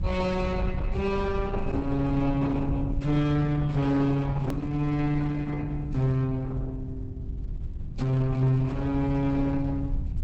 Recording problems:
lossy compression; Opus, log-spectral distance 2 dB, nothing above 19.5 kHz
distorted audio; soft clipping, signal-to-distortion ratio 11 dB
hum; 50 Hz, harmonics up to 350 Hz, SNR 17 dB
low-frequency rumble; below 100 Hz, SNR 7 dB
hard cut with a click; at 4.5 s

